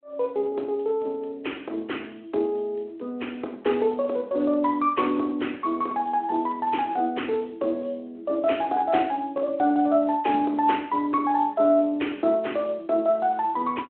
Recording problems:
phone line; 260 Hz to 3.3 kHz, Speex

